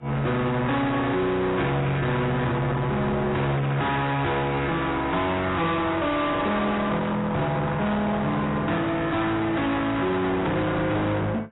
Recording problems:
lossy codec; AAC, log-spectral distance 3 dB, nothing above 3.8 kHz
distorted audio; soft clipping, signal-to-distortion ratio 7 dB

